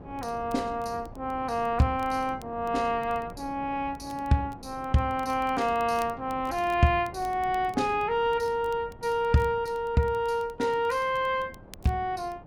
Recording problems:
wind on the microphone; below 490 Hz, SNR 19 dB
crackle; vinyl, SNR 28 dB

